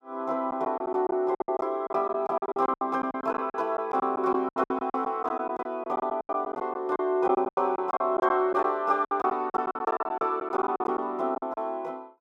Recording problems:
lost packets; 16% of the sound replaced, filled with silence

